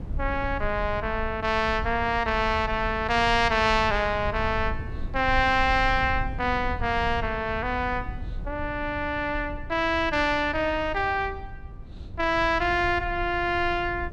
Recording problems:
rumble; below 92 Hz, SNR 12 dB

